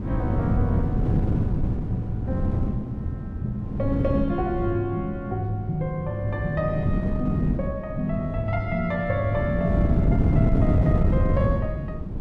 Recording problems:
wind on the microphone; below 200 Hz, SNR -2 dB

